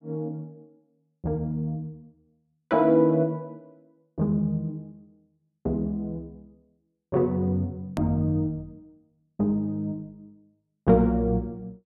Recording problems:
hard cut with a click; at 8 s

